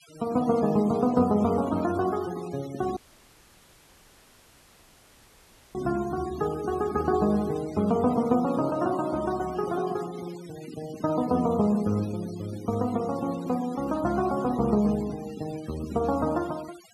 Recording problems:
denoising artefacts; signal-to-artefact ratio 21 dB
dropout; at 3 s for 3 s

